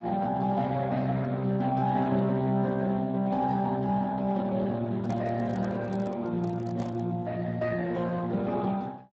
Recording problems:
lossy codec; Speex, log-spectral distance 3 dB
microphone handling noise; from 5 to 7 s; peak -10 dB vs average level

